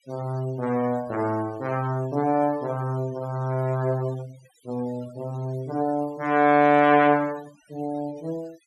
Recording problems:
denoising artefacts; signal-to-artefact ratio 24 dB

